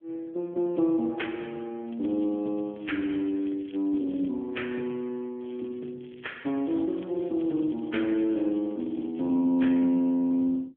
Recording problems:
phone line; 190 Hz to 3.4 kHz, AMR-NB
crackling; from 2 to 4.5 s and from 5.5 to 9 s; loose cable, SNR 27 dB

